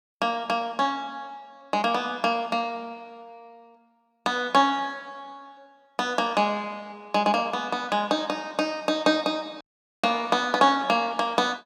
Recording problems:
dropout; at 9.5 s

